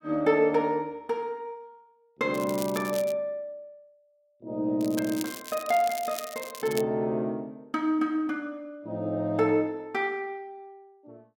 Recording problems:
crackling; at 2.5 s and from 5 to 7 s; loose cable, SNR 12 dB

